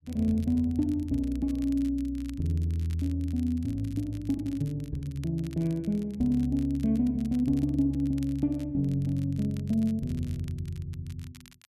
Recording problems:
crackle; vinyl, SNR 26 dB

